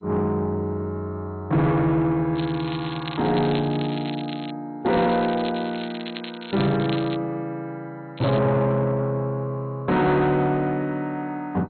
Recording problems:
lossy compression; MP2, log-spectral distance 6 dB, nothing above 4.2 kHz
distorted audio; soft clipping, signal-to-distortion ratio 10 dB
crackle; from 2.5 to 4.5 s, from 5 to 7 s and at 8 s; loose cable, SNR 14 dB

